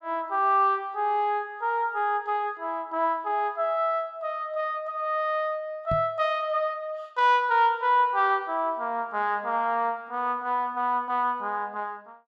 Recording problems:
microphone bump; at 6 s; peak -2 dB vs average level

